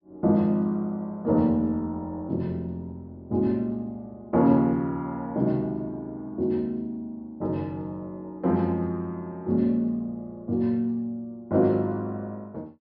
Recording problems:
low-pass filter; nothing above 5.5 kHz

